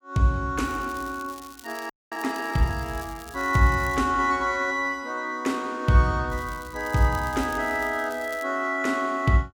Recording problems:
crackling; from 0.5 to 4 s and from 6.5 to 8.5 s; loose cable, SNR 21 dB
frozen audio; at 2 s

